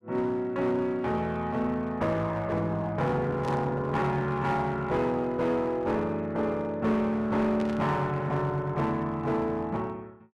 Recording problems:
distorted audio; hard clipping, uneven, signal-to-distortion ratio 11 dB
burst of static; at 3.5 s and at 7.5 s; peak -12 dB vs average level

